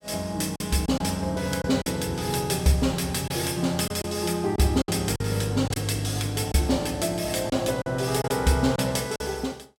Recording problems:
lost packets; 6% of the sound replaced, filled with silence

